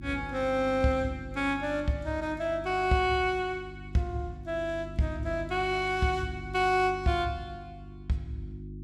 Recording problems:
electrical hum; 50 Hz, harmonics up to 350 Hz, SNR 14 dB

